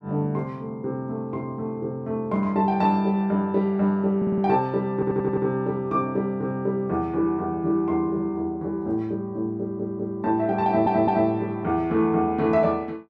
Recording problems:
audio stuttering; 4 times, first at 4 s

